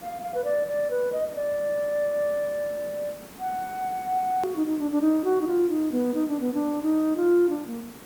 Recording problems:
hiss; slope -5 dB per octave, SNR 18 dB
edit click; at 4.5 s

